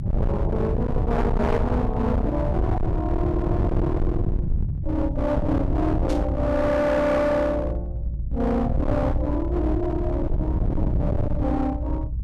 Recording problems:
distorted audio; hard clipping, uneven, signal-to-distortion ratio 6 dB
rumble; below 150 Hz, SNR 1 dB
static burst; at 6 s; peak -10 dB vs average level

